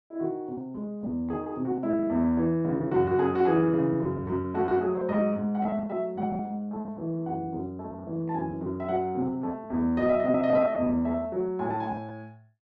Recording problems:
lost packets; 16% of the sound replaced, filled with repeated pitch periods

